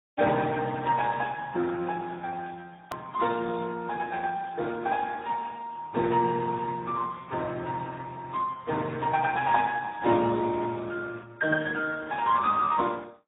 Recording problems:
treble cut off; nothing above 4 kHz
lossy compression; Speex, then AAC, log-spectral distance 4 dB
edit click; at 3 s

